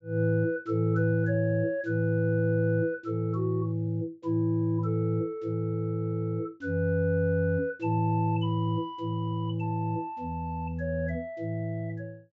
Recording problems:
treble cut off; nothing above 8 kHz

